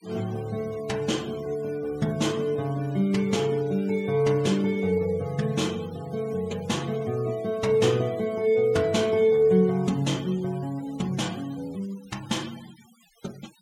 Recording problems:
denoising artefacts; signal-to-artefact ratio 22 dB

